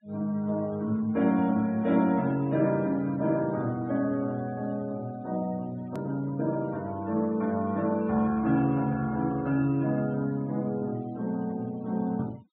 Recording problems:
treble missing; nothing above 4 kHz
noise reduction artefacts; signal-to-artefact ratio 25 dB
hard cut with a click; at 6 s

